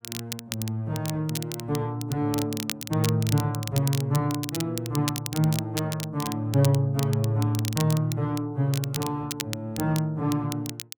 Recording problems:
crackling; vinyl, SNR 9 dB

